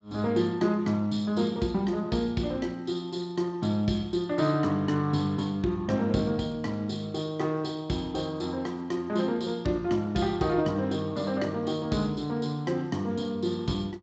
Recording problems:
lossy codec; Speex, log-spectral distance 3 dB, nothing above 7.3 kHz

